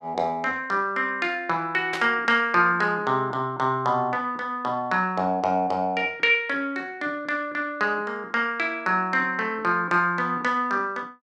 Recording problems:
static burst; at 2 s; peak -3 dB vs average level

